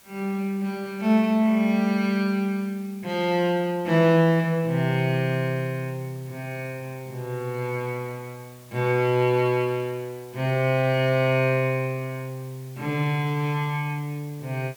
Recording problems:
background hiss; slope -1 dB per octave, SNR 26 dB

